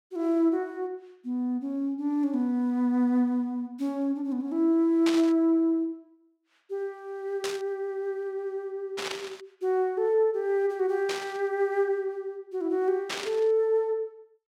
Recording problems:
burst of static; 5 times, first at 5 s; peak -1 dB vs average level

